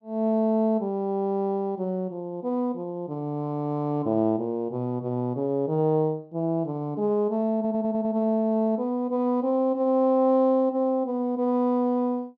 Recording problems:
audio stuttering; at 7.5 s

